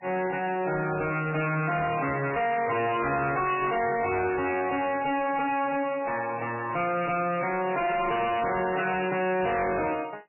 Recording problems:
lossy compression; MP3, log-spectral distance 7 dB, nothing above 2.8 kHz
distorted audio; hard clipping, uneven, signal-to-distortion ratio 5 dB

